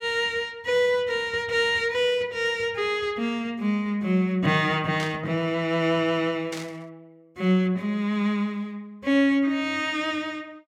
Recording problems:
burst of static; at 5 s and at 6.5 s; peak -6 dB vs average level

